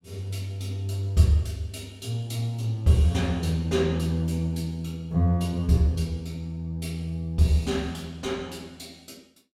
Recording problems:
none

